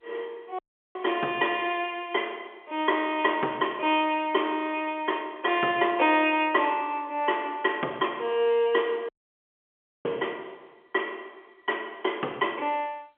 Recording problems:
phone line; 280 Hz to 3.4 kHz, G.711
dropout; at 0.5 s and at 9 s for 1 s

